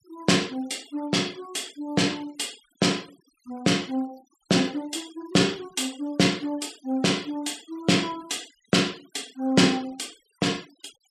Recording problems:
noise reduction artefacts; signal-to-artefact ratio 23 dB

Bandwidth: 14 kHz